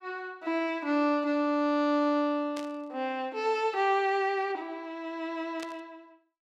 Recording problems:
static burst; at 2.5 s and at 5.5 s; peak -9 dB vs average level

